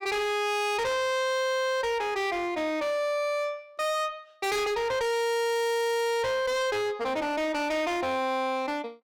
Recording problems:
distortion; hard clipping, signal-to-distortion ratio 5 dB

